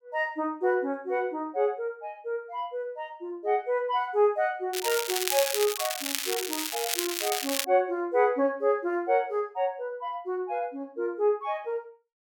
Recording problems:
crackle; from 4.5 to 7.5 s; loose cable, SNR 1 dB

